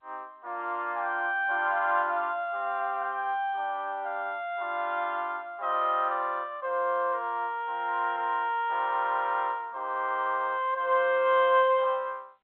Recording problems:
phone line; 300 Hz to 3.6 kHz, G.711

